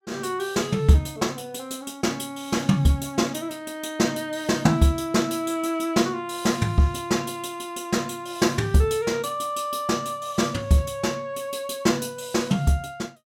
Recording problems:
none

